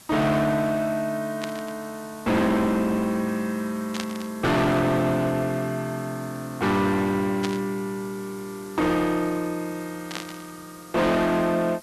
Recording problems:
distortion; hard clipping, uneven, signal-to-distortion ratio 7 dB
background hiss; slope -1 dB per octave, SNR 21 dB
burst of static; 4 times, first at 1.5 s; peak -2 dB vs average level

